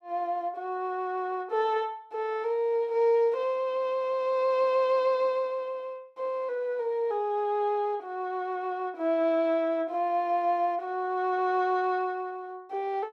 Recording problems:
none

